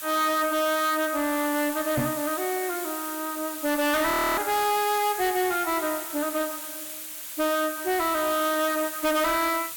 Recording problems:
distortion; soft clipping, signal-to-distortion ratio 7 dB
hiss; SNR 7 dB
microphone thump; at 2 s; peak +2 dB vs average level
frozen audio; at 4 s

